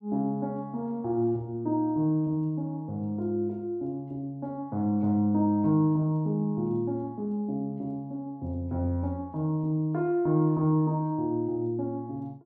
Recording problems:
none

